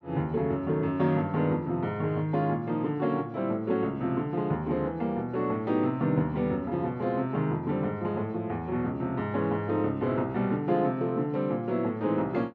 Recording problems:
none

